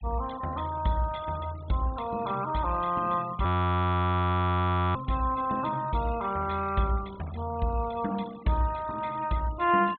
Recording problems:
low-pass filter; nothing above 4 kHz
denoising artefacts; signal-to-artefact ratio 20 dB
audio freezing; at 3.5 s for 1.5 s

